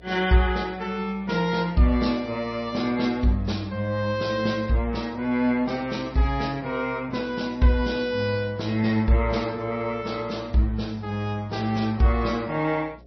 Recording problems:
lossy codec; MP3, log-spectral distance 2 dB, nothing above 5.8 kHz
electrical hum; 60 Hz, harmonics up to 720 Hz, SNR 25 dB

